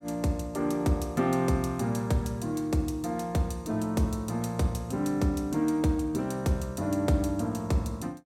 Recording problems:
none

